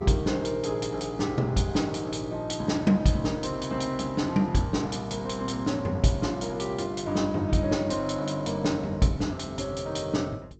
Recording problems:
lossy compression; G.722, log-spectral distance 4 dB, nothing above 7.6 kHz
hum; 50 Hz, harmonics up to 450 Hz, SNR 23 dB

